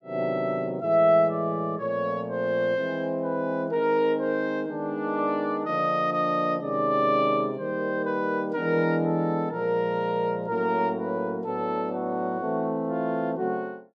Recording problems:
none

